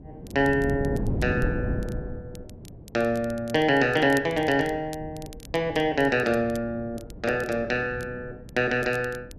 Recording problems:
wind noise; below 260 Hz, SNR 10 dB
crackling; vinyl, SNR 24 dB

